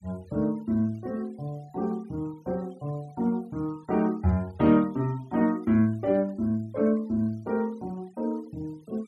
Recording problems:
denoising artefacts; signal-to-artefact ratio 27 dB

